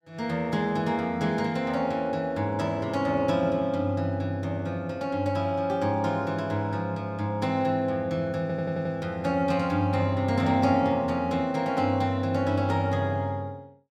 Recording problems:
audio stuttering; at 8.5 s

